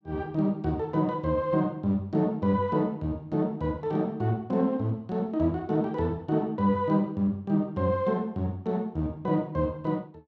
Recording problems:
none

